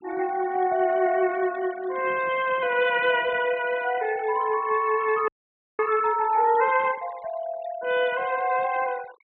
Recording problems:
low-pass filter; nothing above 4 kHz
noise reduction artefacts; signal-to-artefact ratio 19 dB
audio freezing; at 5.5 s for 0.5 s

